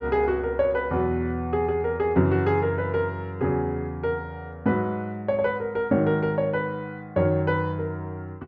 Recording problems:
treble missing; nothing above 8 kHz

